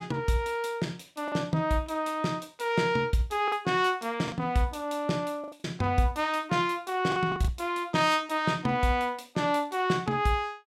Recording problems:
lost packets; 3% of the sound replaced, filled with the last packet

